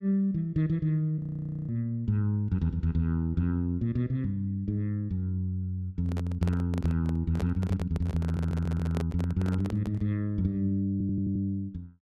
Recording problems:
audio freezing; at 1 s for 0.5 s
handling noise; from 6 to 10 s; peak -3 dB vs average level
stutter; at 8 s and at 11 s

